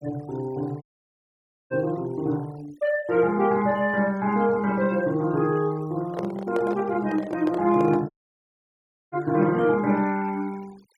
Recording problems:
denoising artefacts; signal-to-artefact ratio 24 dB
dropout; at 1 s for 1 s and at 8 s for 1 s
microphone handling noise; from 6 to 8 s; peak -5 dB vs average level

